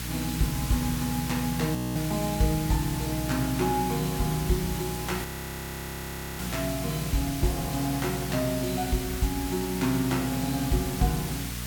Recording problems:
electrical hum; 60 Hz, harmonics up to 660 Hz, SNR 9 dB
hiss; SNR 7 dB
audio freezing; at 2 s and at 5 s for 1 s

